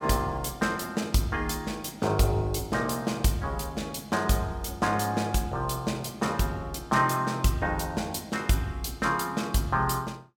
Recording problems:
none

